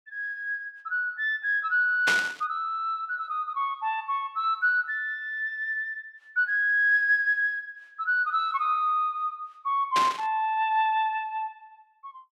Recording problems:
burst of static; at 2 s and at 10 s; peak +3 dB vs average level

